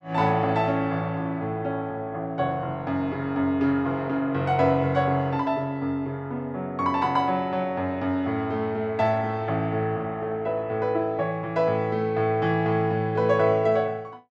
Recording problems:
none

